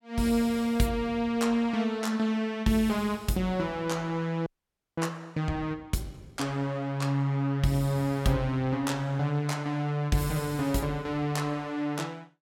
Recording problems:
audio freezing; at 4.5 s for 0.5 s

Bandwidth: 17 kHz